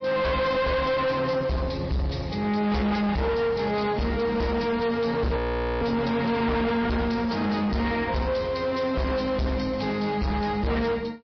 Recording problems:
low-pass filter; nothing above 5.3 kHz
lossy codec; MP3, log-spectral distance 4 dB
distorted audio; soft clipping, signal-to-distortion ratio 7 dB
frozen audio; at 5.5 s

